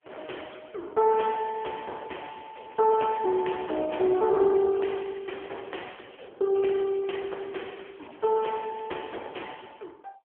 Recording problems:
phone line; 300 Hz to 3.3 kHz, AMR-NB
crackling; from 1.5 to 6.5 s and from 7 to 9 s; loose cable, SNR 27 dB

